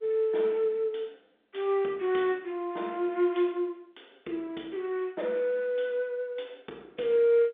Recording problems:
phone line; 190 Hz to 3.7 kHz, G.711

